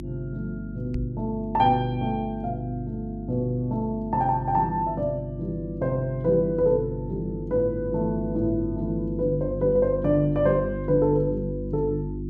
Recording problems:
hum; 50 Hz, harmonics up to 350 Hz, SNR 8 dB
microphone bump; at 1 s; peak -2 dB vs average level

